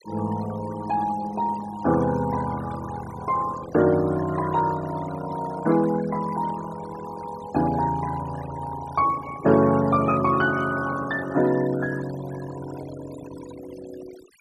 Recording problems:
noise reduction artefacts; signal-to-artefact ratio 16 dB

